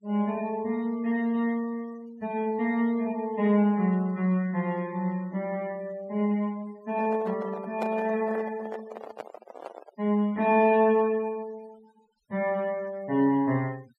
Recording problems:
noise reduction artefacts; signal-to-artefact ratio 25 dB
handling noise; from 7 to 10 s; peak -2 dB vs average level

